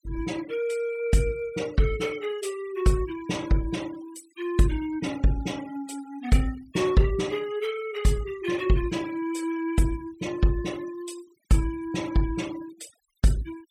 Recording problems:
noise reduction artefacts; signal-to-artefact ratio 20 dB

